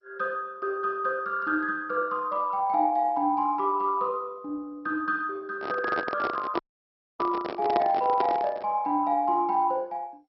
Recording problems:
codec artefacts; MP2, log-spectral distance 2 dB, nothing above 5.3 kHz
microphone handling noise; from 5.5 to 8.5 s; peak +2 dB vs average level
audio cutting out; at 6.5 s for 0.5 s

